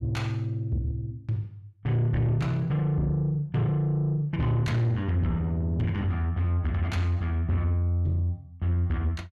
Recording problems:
distortion; soft clipping, signal-to-distortion ratio 10 dB

